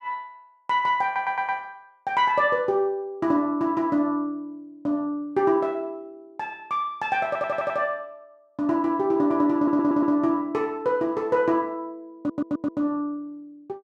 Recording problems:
audio stuttering; 4 times, first at 1 s

